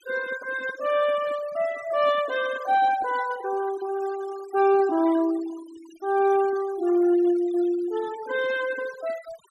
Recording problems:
denoising artefacts; signal-to-artefact ratio 18 dB

